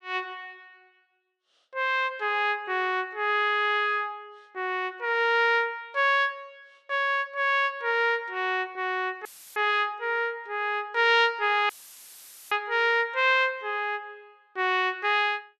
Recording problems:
dropout; at 9.5 s and at 12 s for 1 s; filled with static

